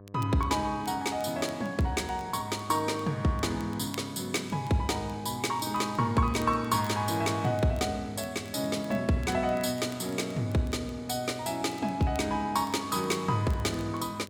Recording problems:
hum; 50 Hz, harmonics up to 1.1 kHz, SNR 23 dB
crackle; vinyl, SNR 25 dB

